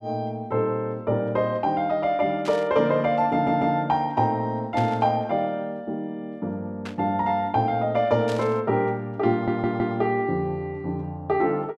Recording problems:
static burst; 4 times, first at 2.5 s; peak -9 dB vs average level
audio stuttering; at 3.5 s and at 9.5 s

